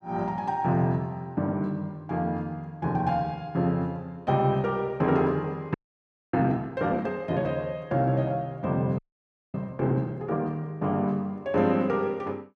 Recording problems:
frozen audio; at 5.5 s for 0.5 s and at 9 s for 0.5 s

